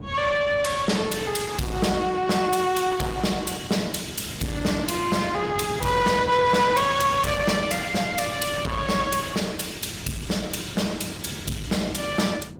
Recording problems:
codec artefacts; Opus, log-spectral distance 5 dB, nothing above 19 kHz
distortion; soft clipping, signal-to-distortion ratio 11 dB
wind on the microphone; below 310 Hz, SNR 13 dB

